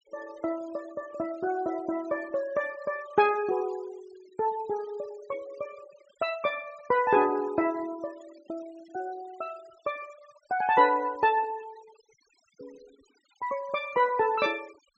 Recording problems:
treble cut off; nothing above 8 kHz
noise reduction artefacts; signal-to-artefact ratio 22 dB

